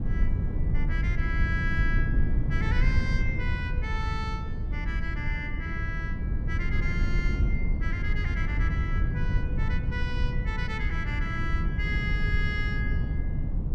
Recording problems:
rumble; below 100 Hz, SNR -6 dB

